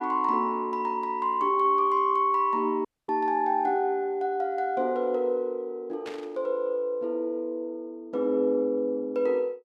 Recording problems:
dropout; at 3 s
burst of static; at 6 s; peak -11 dB vs average level

